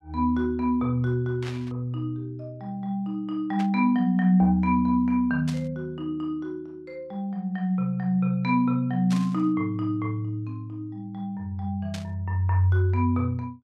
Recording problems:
burst of static; 5 times, first at 1.5 s; peak -8 dB vs average level

